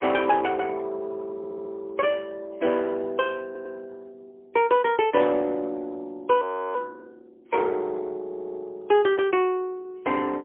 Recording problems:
phone line; 260 Hz to 3.3 kHz, AMR-NB, then MP3
audio stuttering; at 1.5 s, at 3.5 s and at 8 s
frozen audio; at 6.5 s

